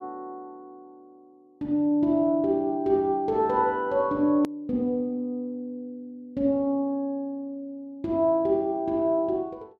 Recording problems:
click at an edit; at 4.5 s

